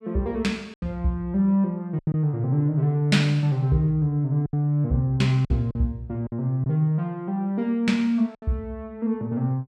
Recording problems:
lost packets; 5% of the sound replaced, filled with silence

